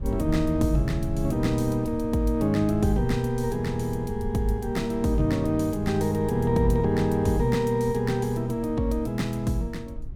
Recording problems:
low-frequency rumble; below 78 Hz, SNR 13 dB

